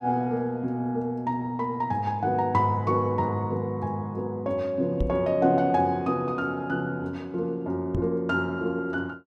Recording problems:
microphone thump; at 5 s and at 8 s; peak +2 dB vs average level

